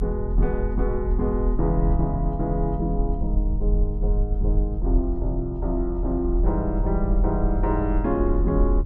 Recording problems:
low-frequency rumble; below 48 Hz, strongest tone 40 Hz, SNR 0 dB

